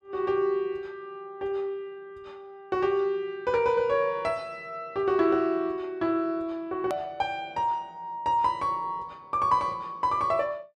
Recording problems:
edit click; at 7 s

